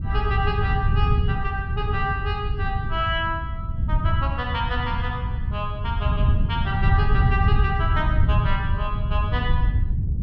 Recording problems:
wind noise; below 110 Hz, SNR -3 dB

